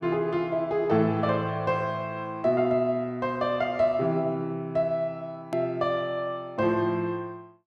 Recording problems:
hard cut with a click; at 5.5 s

